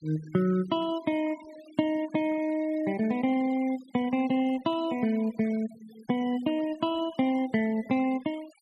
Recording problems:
denoising artefacts; signal-to-artefact ratio 22 dB

